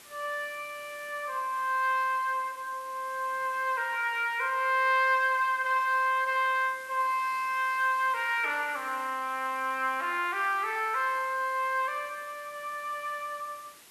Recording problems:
background hiss; slope 0 dB per octave, SNR 22 dB

